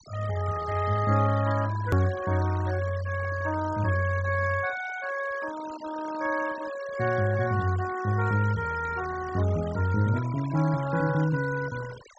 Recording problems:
treble missing; nothing above 8 kHz
denoising artefacts; signal-to-artefact ratio 16 dB
hard cut with a click; at 2 s

